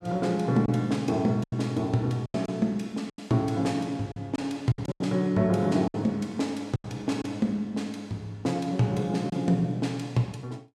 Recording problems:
packet loss; 6% of the sound replaced, filled with silence

